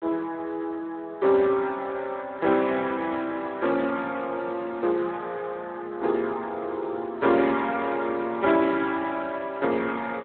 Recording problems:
telephone audio; 280 Hz to 3.7 kHz, Speex

